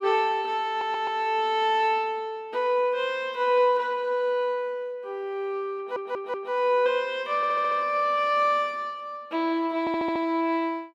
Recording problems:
audio stuttering; 4 times, first at 0.5 s

